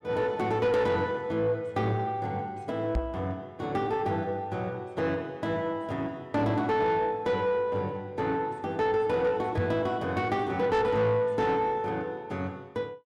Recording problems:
distorted audio; soft clipping, signal-to-distortion ratio 12 dB
knock on the microphone; at 3 s and at 9.5 s; peak +4 dB vs average level

